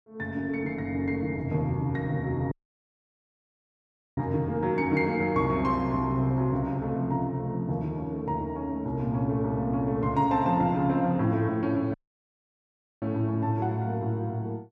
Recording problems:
dropout; at 2.5 s for 1.5 s and at 12 s for 1 s

